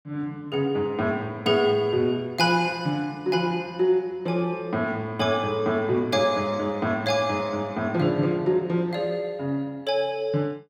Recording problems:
none

